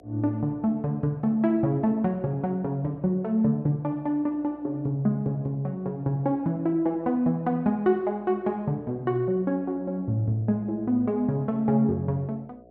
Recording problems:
hum; 60 Hz, harmonics up to 720 Hz, SNR 26 dB

